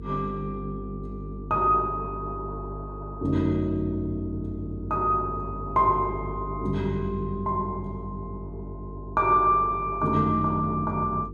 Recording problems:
hum; 50 Hz, harmonics up to 450 Hz, SNR 12 dB

